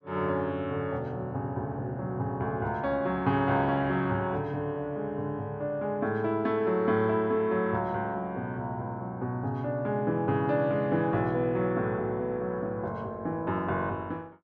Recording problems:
none

